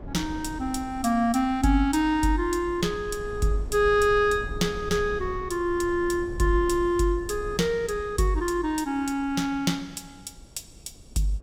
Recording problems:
wind noise; below 110 Hz, SNR 16 dB

